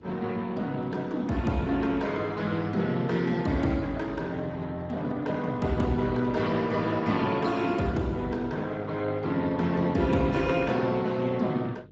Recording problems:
lossy codec; Speex, log-spectral distance 3 dB
hum; 50 Hz, harmonics up to 500 Hz, SNR 23 dB

